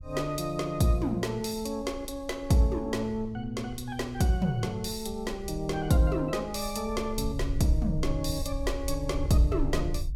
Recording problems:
low-frequency rumble; below 70 Hz, SNR 10 dB

